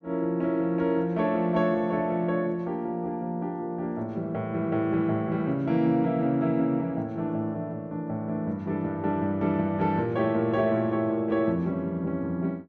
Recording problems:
none

